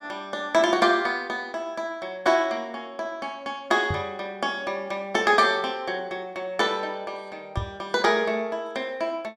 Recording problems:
microphone thump; at 4 s and at 7.5 s; peak +1 dB vs average level

